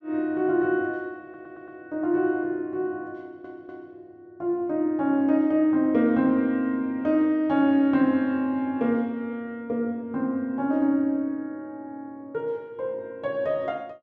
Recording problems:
audio stuttering; at 1 s and at 3 s

